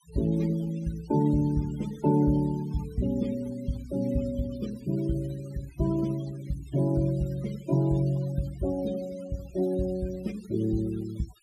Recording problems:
denoising artefacts; signal-to-artefact ratio 19 dB

